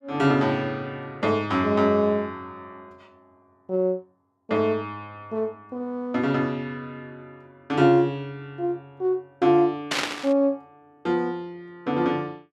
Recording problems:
burst of static; at 10 s; peak +3 dB vs average level

